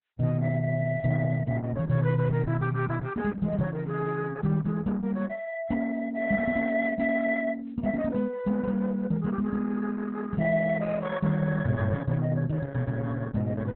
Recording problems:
lossy codec; Opus, log-spectral distance 3 dB

